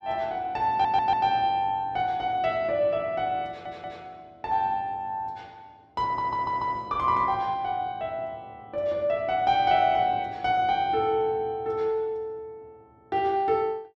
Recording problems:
stutter; at 0.5 s, at 3.5 s and at 6 s

